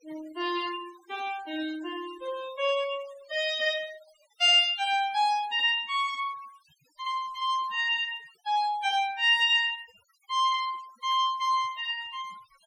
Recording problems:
denoising artefacts; signal-to-artefact ratio 23 dB

